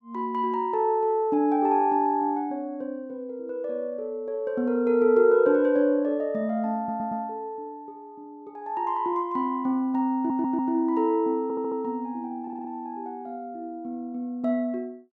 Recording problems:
audio stuttering; 4 times, first at 7 s

